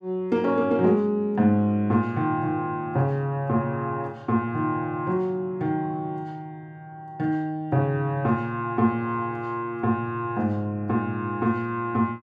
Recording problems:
none

